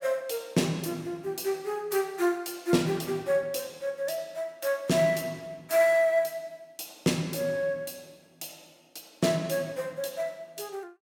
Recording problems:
none

